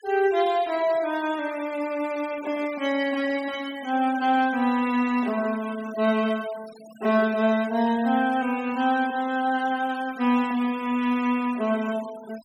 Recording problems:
noise reduction artefacts; signal-to-artefact ratio 20 dB

